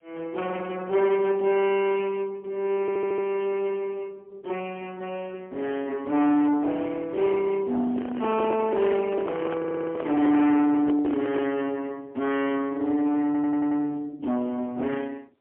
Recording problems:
telephone audio; 240 Hz to 3.1 kHz, AMR-NB, then MP3
distorted audio; soft clipping, signal-to-distortion ratio 10 dB
audio stuttering; at 3 s, at 9.5 s and at 13 s
microphone handling noise; from 8 to 12 s; peak +2 dB vs average level

